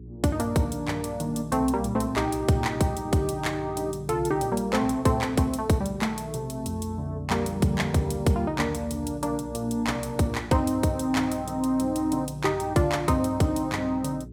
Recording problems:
hum; 60 Hz, harmonics up to 420 Hz, SNR 16 dB

